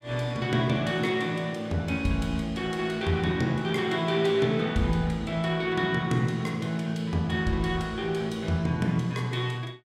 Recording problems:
none

